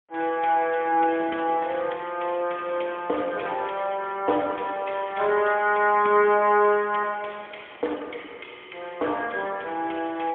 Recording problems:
telephone audio; 260 Hz to 3.4 kHz, AMR-NB, then MP3
wind noise; below 1.2 kHz, SNR 24 dB

